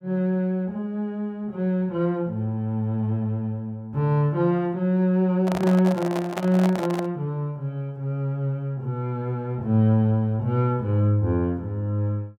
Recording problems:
microphone handling noise; from 5.5 to 7 s; peak -2 dB vs average level

